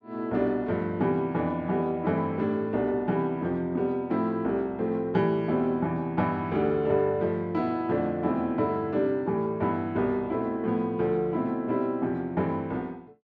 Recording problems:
none

